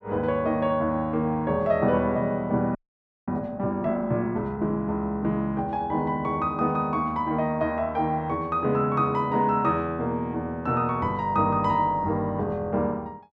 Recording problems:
frozen audio; at 3 s for 0.5 s

